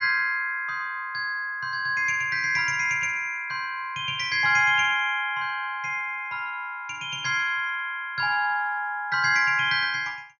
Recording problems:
low-pass filter; nothing above 6.6 kHz

